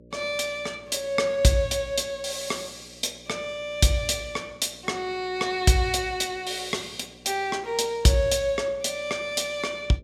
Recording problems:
hum; 60 Hz, harmonics up to 600 Hz, SNR 26 dB

